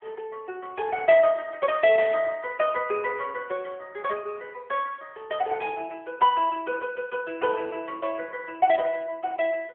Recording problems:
telephone audio; 300 Hz to 3.5 kHz, AMR-NB

